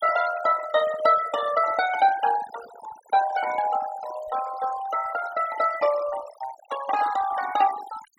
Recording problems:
noise reduction artefacts; signal-to-artefact ratio 14 dB

